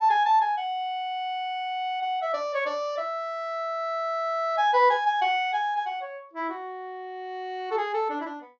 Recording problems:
low-pass filter; nothing above 8 kHz

